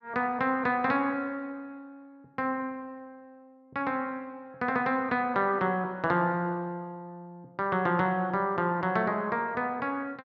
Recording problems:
none

